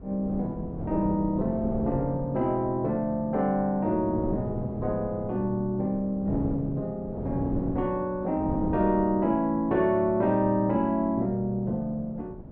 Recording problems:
wind noise; below 360 Hz, SNR 10 dB

